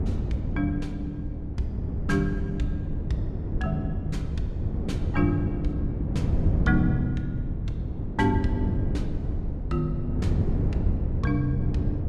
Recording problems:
low-frequency rumble; below 84 Hz, SNR 10 dB
wind on the microphone; below 180 Hz, SNR -1 dB

